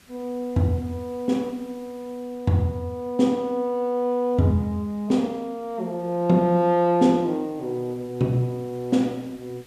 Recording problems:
hiss; SNR 29 dB

